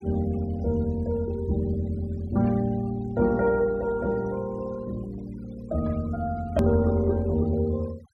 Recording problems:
denoising artefacts; signal-to-artefact ratio 24 dB
edit click; at 6.5 s

